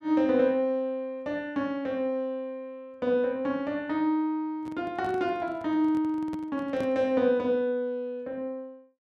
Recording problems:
microphone handling noise; from 4.5 to 7 s; peak -7 dB vs average level

